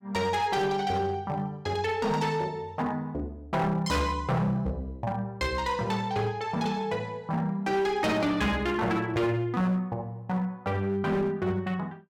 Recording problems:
distortion; hard clipping, uneven, signal-to-distortion ratio 10 dB

